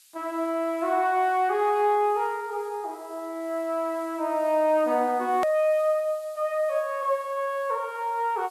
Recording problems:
background hiss; slope +7 dB per octave, SNR 27 dB
edit click; at 5.5 s

